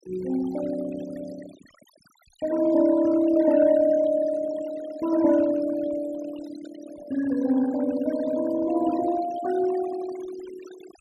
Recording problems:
denoising artefacts; signal-to-artefact ratio 17 dB

